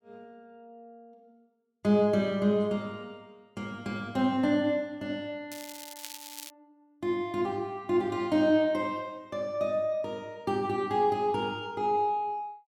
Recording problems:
crackle; at 5.5 s; loose cable, SNR 13 dB

